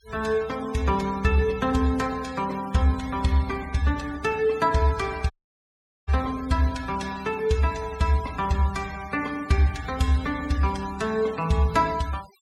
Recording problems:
denoising artefacts; signal-to-artefact ratio 18 dB
dropout; at 5.5 s for 1 s

